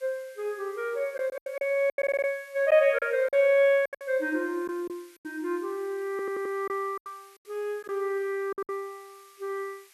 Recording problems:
background hiss; SNR 27 dB
packet loss; 8% of the sound replaced, filled with silence
stutter; at 2 s and at 6 s

